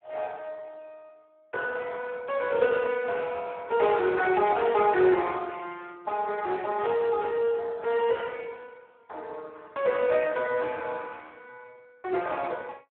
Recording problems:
phone line; 320 Hz to 2.8 kHz, Speex

